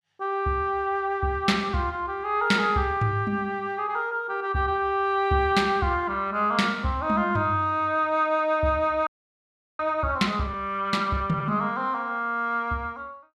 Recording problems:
audio freezing; at 9 s for 0.5 s

